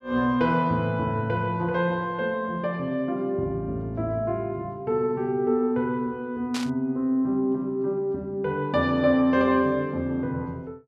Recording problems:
burst of static; at 6.5 s; peak -3 dB vs average level

